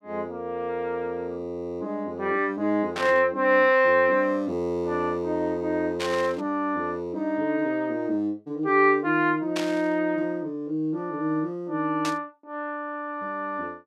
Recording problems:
burst of static; 4 times, first at 3 s; peak -2 dB vs average level

